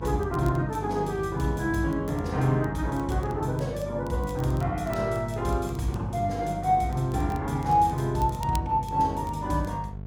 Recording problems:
hum; 50 Hz, harmonics up to 700 Hz, SNR 11 dB
crackle; vinyl, SNR 25 dB

